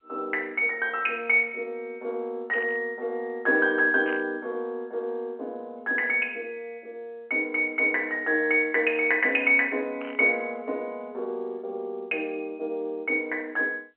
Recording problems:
telephone audio; 280 Hz to 3.1 kHz, G.711
burst of static; at 2.5 s, at 4 s and at 10 s; peak -9 dB vs average level

